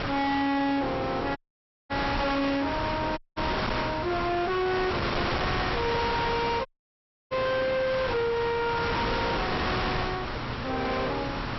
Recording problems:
treble missing; nothing above 5.6 kHz
distortion; hard clipping, signal-to-distortion ratio 6 dB
mains hum; 60 Hz, harmonics up to 840 Hz, SNR 15 dB
wind on the microphone; below 2.1 kHz, SNR 2 dB
audio cutting out; at 1.5 s for 0.5 s, at 3 s and at 6.5 s for 0.5 s

